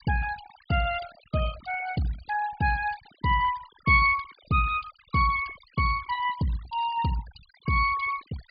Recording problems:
low-pass filter; nothing above 4.8 kHz
denoising artefacts; signal-to-artefact ratio 16 dB

